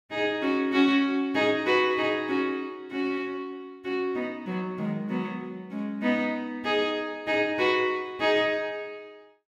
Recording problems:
none

